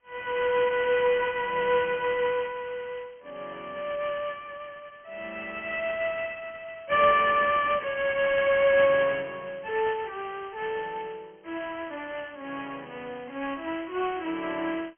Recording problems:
phone line; 300 Hz to 3.3 kHz, G.726

